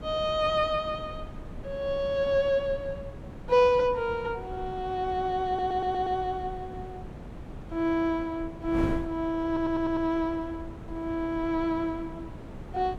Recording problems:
wind noise; below 300 Hz, SNR 13 dB
audio stuttering; at 5.5 s and at 9.5 s

